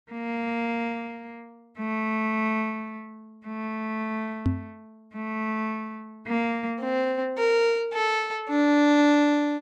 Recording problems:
microphone bump; at 4.5 s; peak +4 dB vs average level

